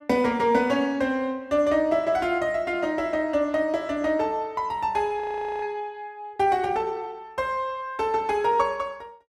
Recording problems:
frozen audio; at 5 s

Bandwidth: 14.5 kHz